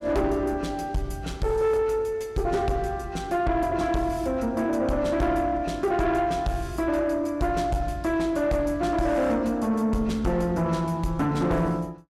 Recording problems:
distortion; soft clipping, signal-to-distortion ratio 10 dB

